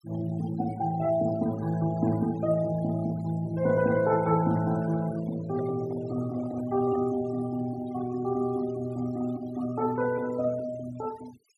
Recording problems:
noise reduction artefacts; signal-to-artefact ratio 18 dB
handling noise; from 5.5 to 7 s; peak -9 dB vs average level

